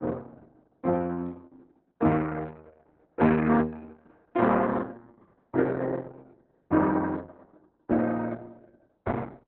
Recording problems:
lossy compression; Opus, log-spectral distance 3 dB, nothing above 3.9 kHz

